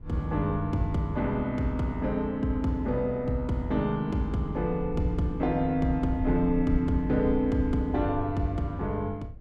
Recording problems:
low-frequency rumble; below 86 Hz, SNR 13 dB

